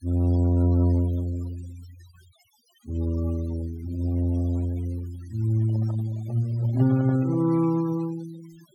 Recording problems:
noise reduction artefacts; signal-to-artefact ratio 23 dB
handling noise; from 5.5 to 7.5 s; peak -11 dB vs average level

